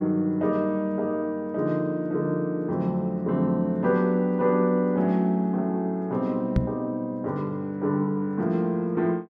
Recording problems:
knock on the microphone; at 6.5 s; peak +6 dB vs average level

